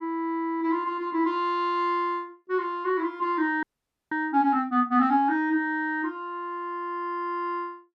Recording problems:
frozen audio; at 3.5 s

